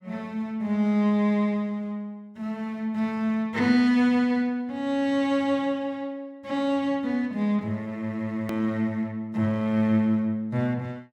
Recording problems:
edit click; at 8.5 s

